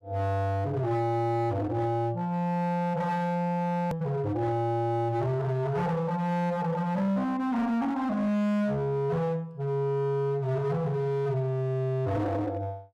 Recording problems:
distorted audio; hard clipping, signal-to-distortion ratio 11 dB
hard cut with a click; at 4 s

